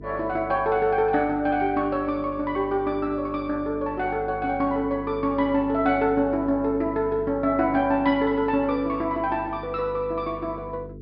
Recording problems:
treble missing; nothing above 5.5 kHz
hum; 50 Hz, harmonics up to 450 Hz, SNR 16 dB

